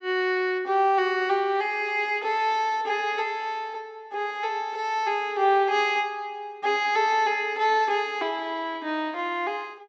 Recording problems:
low-pass filter; nothing above 8 kHz

